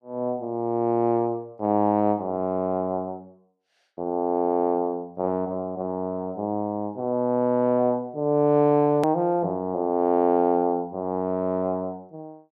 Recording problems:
hard cut with a click; at 9 s

